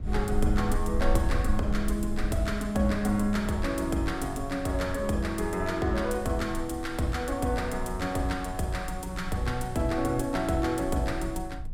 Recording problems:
low-frequency rumble; below 54 Hz, strongest tone 18 Hz, SNR 8 dB

